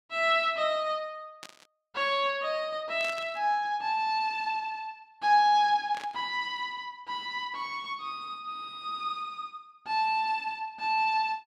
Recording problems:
static burst; at 1.5 s, at 3 s and at 6 s; peak -9 dB vs average level

